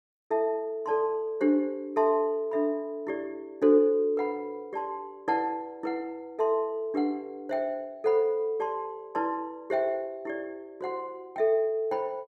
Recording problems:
none

